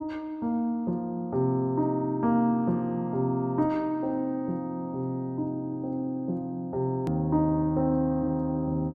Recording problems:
edit click; at 7 s

